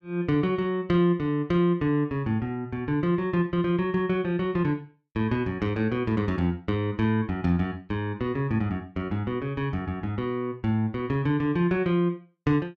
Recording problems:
none

